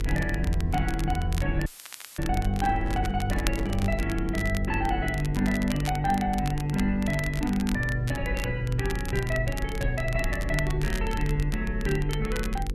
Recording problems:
hum; 50 Hz, harmonics up to 500 Hz, SNR 6 dB
low-frequency rumble; below 50 Hz, strongest tone 38 Hz, SNR 7 dB
crackling; vinyl, SNR 12 dB
audio cutting out; at 1.5 s for 0.5 s; filled with static
handling noise; from 2.5 to 4 s; peak -7 dB vs average level

